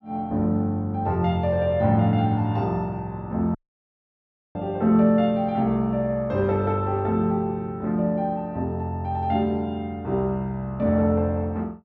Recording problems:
audio cutting out; at 3.5 s for 1 s

